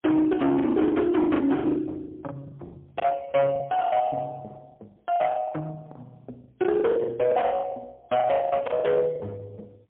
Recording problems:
phone line; 170 Hz to 2.3 kHz, AMR-NB, then MP3
distorted audio; hard clipping, uneven, signal-to-distortion ratio 11 dB
lost packets; 15% of the sound replaced, filled with the last packet

